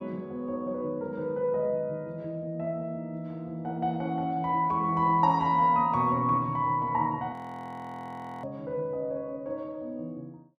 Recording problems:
audio freezing; at 7.5 s for 1 s

